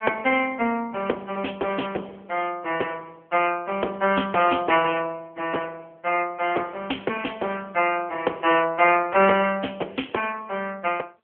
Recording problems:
telephone audio; 300 Hz to 3.2 kHz, AMR-NB

